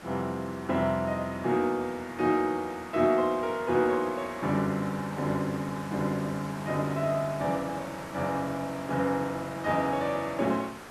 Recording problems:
background hiss; SNR 15 dB

